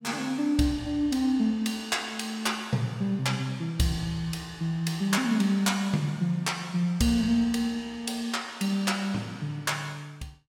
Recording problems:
none

